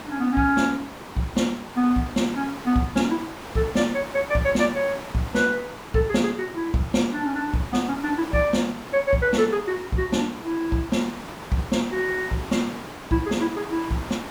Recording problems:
background hiss; SNR 13 dB

